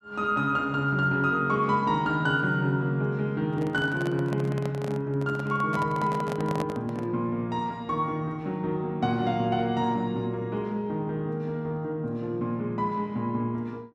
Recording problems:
microphone handling noise; from 3.5 to 7 s; peak -1 dB vs average level

